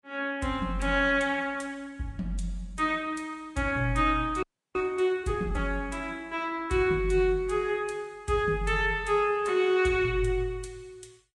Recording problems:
lossy codec; Vorbis, log-spectral distance 2 dB, nothing above 10.4 kHz
frozen audio; at 4.5 s

